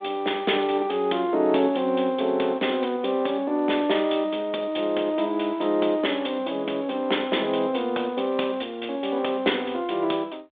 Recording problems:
telephone audio; 240 Hz to 3.6 kHz, G.726

